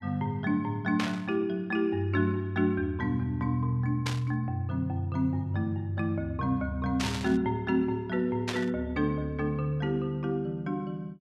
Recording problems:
static burst; 4 times, first at 1 s; peak +1 dB vs average level

